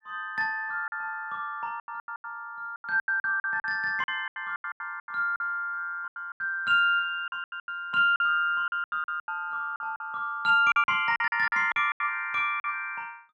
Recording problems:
lost packets; 16% of the sound replaced, filled with silence

